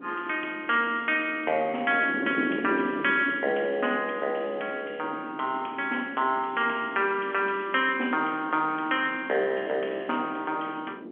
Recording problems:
telephone audio; 220 Hz to 3.3 kHz, G.711
wind noise; below 410 Hz, SNR 12 dB

